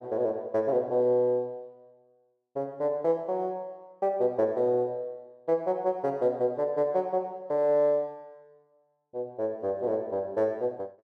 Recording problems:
none

